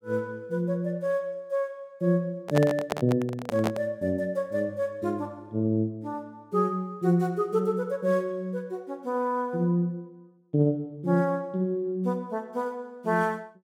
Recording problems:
microphone handling noise; from 2.5 to 4 s; peak +3 dB vs average level

